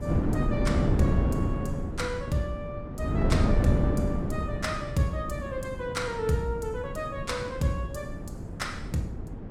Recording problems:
wind noise; below 260 Hz, SNR -2 dB

